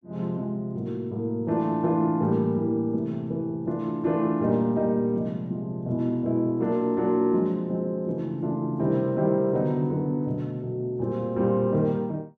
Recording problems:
none

